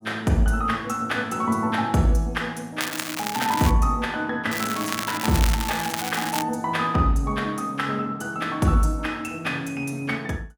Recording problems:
crackling; at 3 s and from 4.5 to 6.5 s; loose cable, SNR 5 dB

